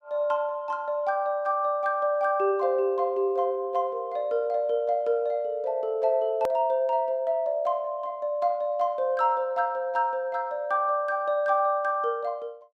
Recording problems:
hard cut with a click; at 6.5 s

